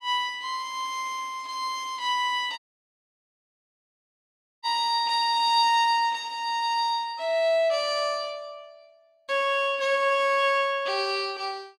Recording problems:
dropout; at 2.5 s for 2 s

